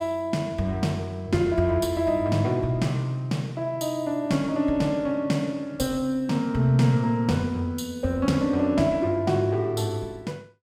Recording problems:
none

